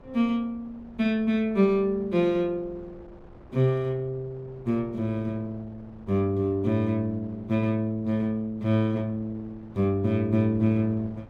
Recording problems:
wind on the microphone; below 490 Hz, SNR 23 dB

